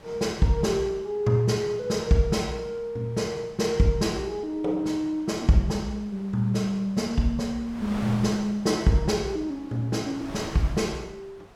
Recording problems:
wind on the microphone; below 1.3 kHz, SNR 19 dB

